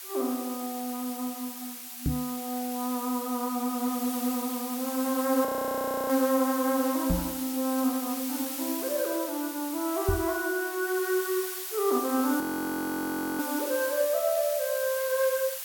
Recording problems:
background hiss; SNR 6 dB
microphone thump; at 2 s, at 7 s and at 10 s; peak +4 dB vs average level
frozen audio; at 5.5 s for 0.5 s and at 12 s for 1 s

